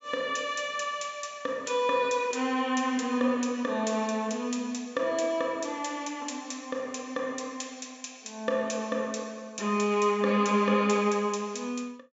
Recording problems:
treble missing; nothing above 8 kHz

